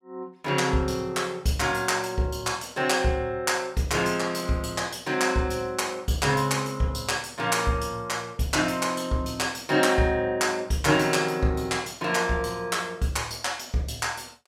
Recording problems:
none

